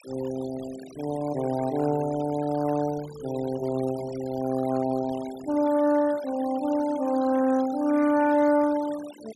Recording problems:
noise reduction artefacts; signal-to-artefact ratio 19 dB

